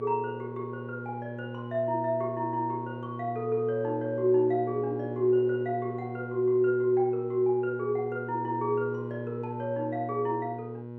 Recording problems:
electrical hum; 60 Hz, harmonics up to 1.1 kHz, SNR 9 dB

